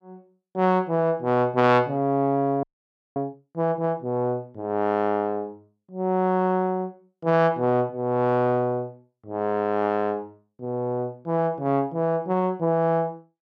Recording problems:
audio freezing; at 2.5 s for 0.5 s

